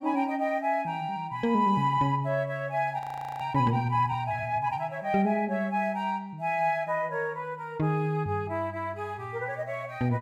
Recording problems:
frozen audio; at 3 s

